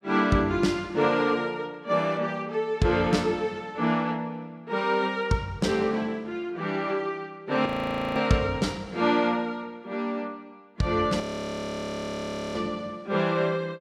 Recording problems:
audio freezing; at 7.5 s for 0.5 s and at 11 s for 1.5 s

